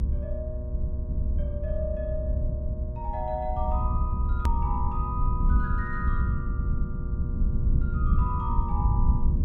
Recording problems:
electrical hum; 60 Hz, harmonics up to 1.2 kHz, SNR 8 dB
rumble; below 84 Hz, SNR -7 dB
click at an edit; at 4.5 s

